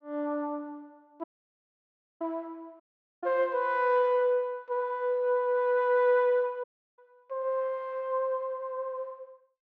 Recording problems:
dropout; at 1 s for 1 s, at 3 s and at 6.5 s

